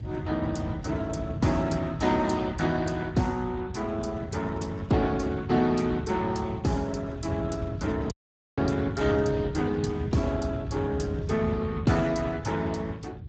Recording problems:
lossy codec; Speex, log-spectral distance 3 dB, nothing above 7.8 kHz
low-frequency rumble; below 160 Hz, SNR 8 dB
audio cutting out; at 8 s

